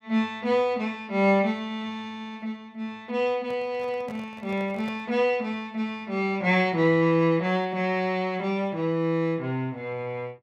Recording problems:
handling noise; from 3.5 to 5 s; peak -11 dB vs average level

